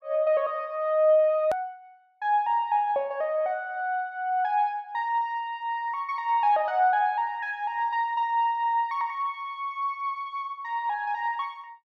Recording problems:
hard cut with a click; at 1.5 s

